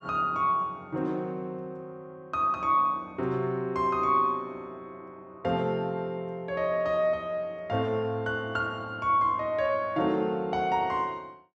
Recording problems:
none

